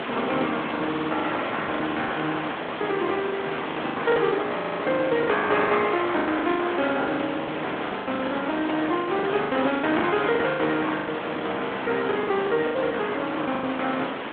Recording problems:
telephone audio; 240 Hz to 3.8 kHz, Speex
background hiss; SNR 5 dB
packet loss; 16% of the sound replaced, filled with the last packet
audio stuttering; at 1 s and at 4.5 s

